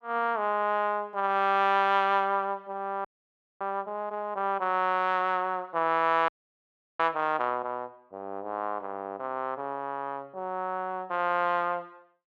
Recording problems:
audio freezing; at 3 s for 0.5 s and at 6.5 s for 0.5 s

